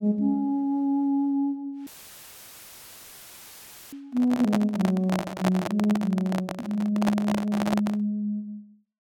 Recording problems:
dropout; at 2 s for 2 s; filled with static
microphone handling noise; from 4 to 8 s; peak +3 dB vs average level

